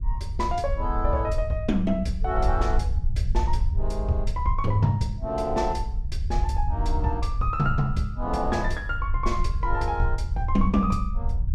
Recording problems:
rumble; below 70 Hz, SNR 2 dB

